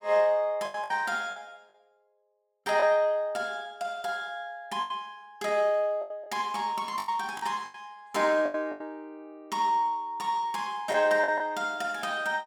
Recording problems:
packet loss; 7% of the sound replaced, filled with the last packet

